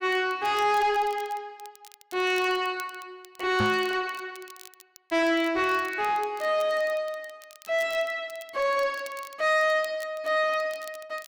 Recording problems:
distorted audio; soft clipping, signal-to-distortion ratio 11 dB
crackle; vinyl, SNR 23 dB
microphone bump; at 3.5 s; peak +4 dB vs average level

